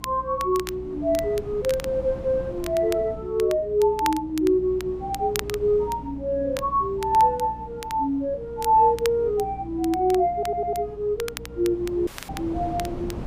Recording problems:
electrical hum; 60 Hz, harmonics up to 300 Hz, SNR 18 dB
wind on the microphone; below 370 Hz, SNR 18 dB
crackle; vinyl, SNR 16 dB
stutter; at 10 s
audio cutting out; at 12 s

